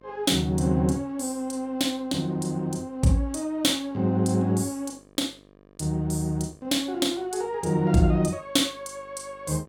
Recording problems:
mains hum; 50 Hz, harmonics up to 2.4 kHz, SNR 29 dB

